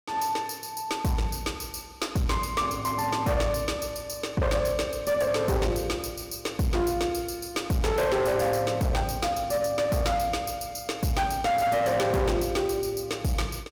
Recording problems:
distorted audio; hard clipping, uneven, signal-to-distortion ratio 8 dB

